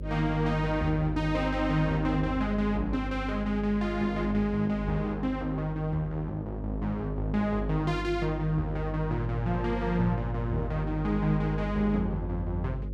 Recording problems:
hum; 50 Hz, harmonics up to 550 Hz, SNR 7 dB

